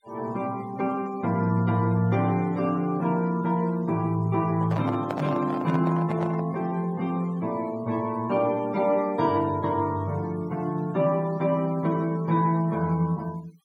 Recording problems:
noise reduction artefacts; signal-to-artefact ratio 25 dB
handling noise; from 4.5 to 6.5 s; peak -3 dB vs average level

